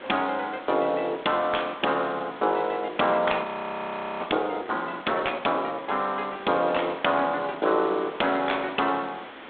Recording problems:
telephone audio; 220 Hz to 3.6 kHz, G.726
hiss; SNR 17 dB
frozen audio; at 3.5 s for 1 s

